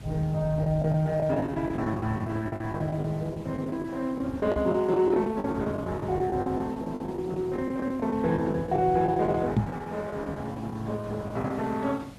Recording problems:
lossy compression; Opus, log-spectral distance 3 dB
hiss; slope -4 dB per octave, SNR 24 dB
rumble; below 160 Hz, SNR 12 dB
packet loss; 14% of the sound replaced, filled with the last packet
microphone bump; at 4.5 s and at 9.5 s; peak +9 dB vs average level

